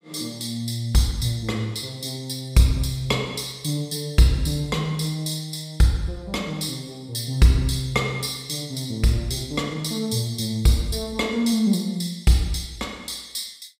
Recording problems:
none

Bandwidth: 15.5 kHz